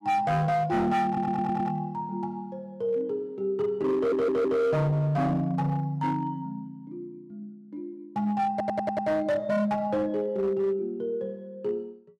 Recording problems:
distorted audio; hard clipping, signal-to-distortion ratio 11 dB
audio stuttering; at 1 s, at 4 s and at 8.5 s

